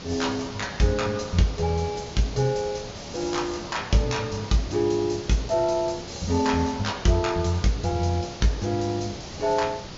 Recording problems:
treble missing; nothing above 7.2 kHz
hiss; SNR 12 dB

